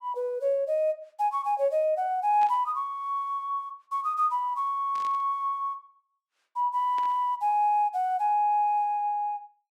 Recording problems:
burst of static; at 2.5 s, at 5 s and at 7 s; peak -14 dB vs average level

